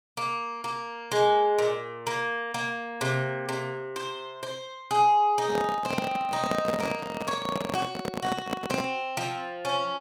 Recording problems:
handling noise; from 5.5 to 9 s; peak +4 dB vs average level

